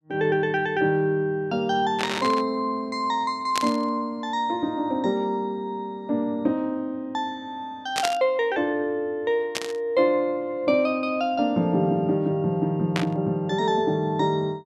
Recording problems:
static burst; 5 times, first at 2 s; peak +3 dB vs average level

